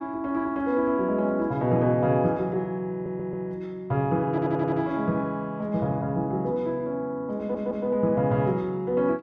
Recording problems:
audio stuttering; at 3 s, at 4.5 s and at 7.5 s

